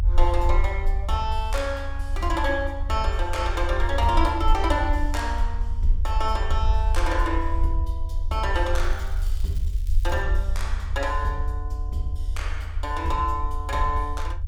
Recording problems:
low-frequency rumble; below 54 Hz, SNR 0 dB
crackling; from 9 to 10 s; loose cable, SNR 23 dB

